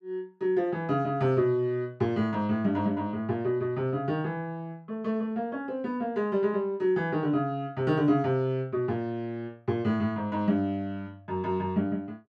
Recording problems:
none

